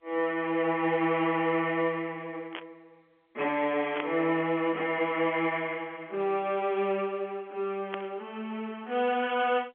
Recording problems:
telephone audio; 260 Hz to 3.4 kHz, G.711
static burst; at 2.5 s, at 4 s and at 8 s; peak -2 dB vs average level

